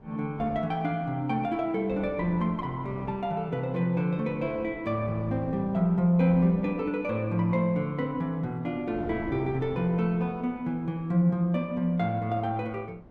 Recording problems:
wind noise; below 510 Hz, SNR 18 dB

